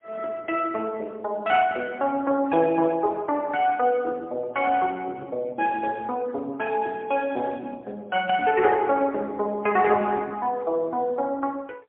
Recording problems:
phone line; 280 Hz to 3.3 kHz, AMR-NB, then MP3

